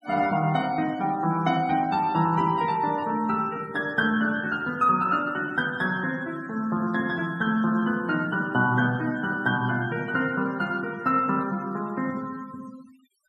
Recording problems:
denoising artefacts; signal-to-artefact ratio 24 dB

